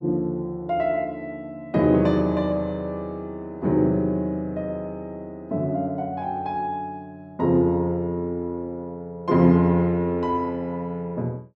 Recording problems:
none

